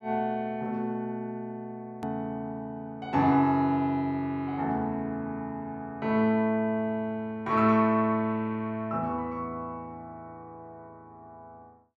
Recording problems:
click at an edit; at 2 s

